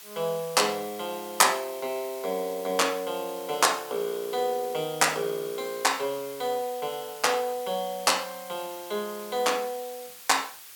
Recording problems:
hiss; slope +2 dB per octave, SNR 15 dB

